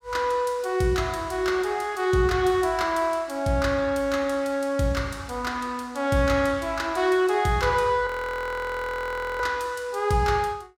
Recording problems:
audio freezing; at 8 s for 1.5 s

